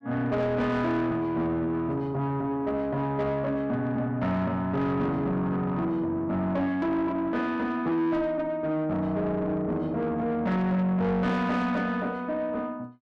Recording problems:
distorted audio; soft clipping, signal-to-distortion ratio 10 dB

